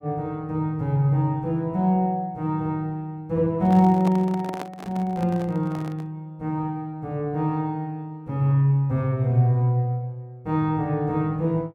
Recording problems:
microphone handling noise; from 3.5 to 6 s; peak -5 dB vs average level

